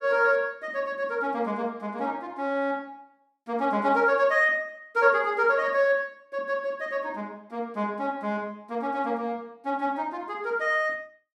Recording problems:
none

